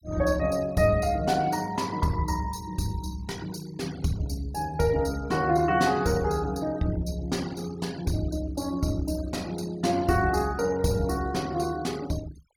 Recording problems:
denoising artefacts; signal-to-artefact ratio 20 dB

